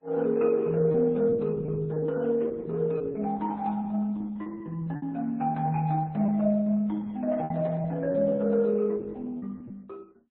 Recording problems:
codec artefacts; Opus, then MP3, log-spectral distance 2 dB, nothing above 4 kHz
packet loss; 6% of the sound replaced, filled with repeated pitch periods

